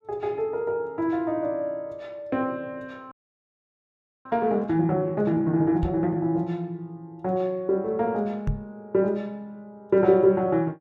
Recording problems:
audio freezing; at 3 s for 1 s
microphone thump; at 6 s and at 8.5 s; peak +1 dB vs average level

